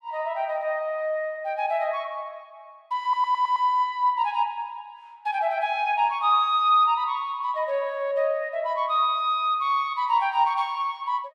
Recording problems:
audio stuttering; at 3 s

